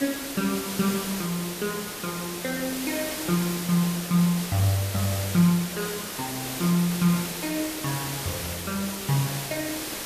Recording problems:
background hiss; slope -2 dB per octave, SNR 5 dB

